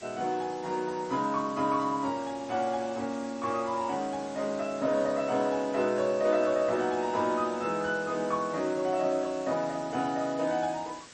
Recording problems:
lossy compression; MP3, log-spectral distance 8 dB, nothing above 7.3 kHz
background hiss; SNR 19 dB

